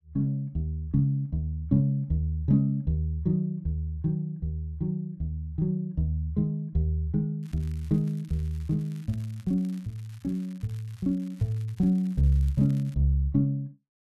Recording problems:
crackling; from 7.5 to 13 s; loose cable, SNR 28 dB

